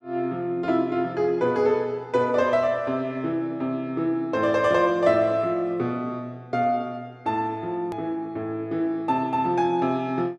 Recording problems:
edit click; at 8 s

